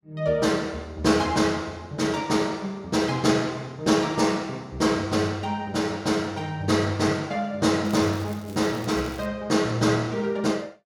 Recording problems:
crackle; from 8 to 9.5 s; loose cable, SNR 23 dB

